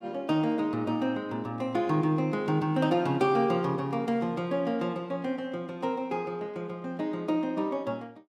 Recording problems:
none

